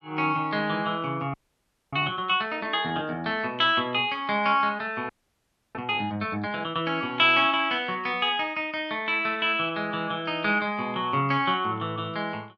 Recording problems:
frozen audio; at 1.5 s for 0.5 s and at 5 s for 0.5 s

